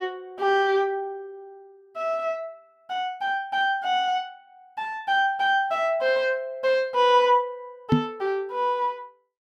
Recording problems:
knock on the microphone; at 8 s; peak +8 dB vs average level

